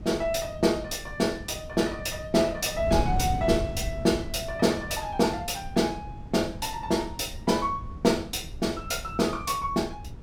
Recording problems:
wind noise; below 150 Hz, SNR 11 dB

